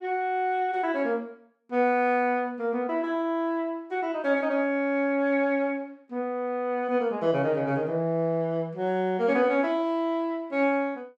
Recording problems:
none

